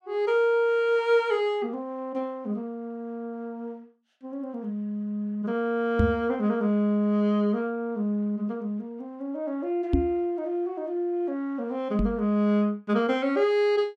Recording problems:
knock on the microphone; at 6 s, at 10 s and at 12 s; peak +7 dB vs average level

